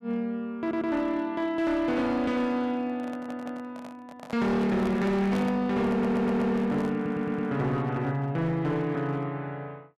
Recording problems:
distortion; hard clipping, signal-to-distortion ratio 10 dB
audio stuttering; 4 times, first at 0.5 s
microphone handling noise; from 3 to 7.5 s; peak -5 dB vs average level

